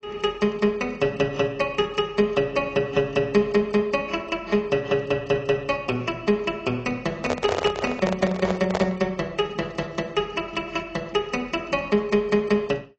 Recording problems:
lossy codec; AAC, log-spectral distance 3 dB
microphone handling noise; from 7 to 9 s; peak +3 dB vs average level

